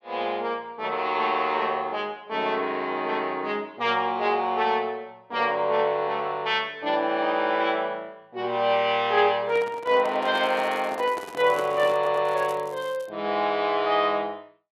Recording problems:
microphone handling noise; from 9.5 to 12 s; peak -8 dB vs average level
crackling; from 10 to 13 s; loose cable, SNR 25 dB
stutter; at 12 s

